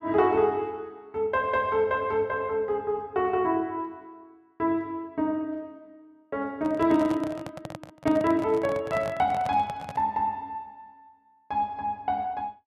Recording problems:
microphone handling noise; from 6.5 to 10 s; peak -3 dB vs average level

